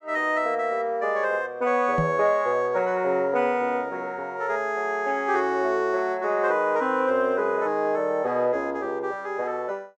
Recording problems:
microphone thump; at 2 s; peak +1 dB vs average level

